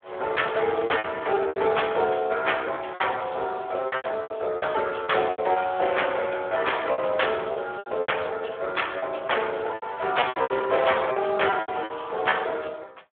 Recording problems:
telephone audio; 340 Hz to 3.5 kHz, Speex
packet loss; 13% of the sound replaced, filled with repeated pitch periods

